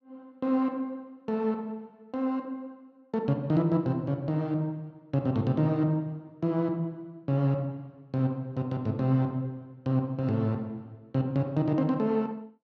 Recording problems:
none

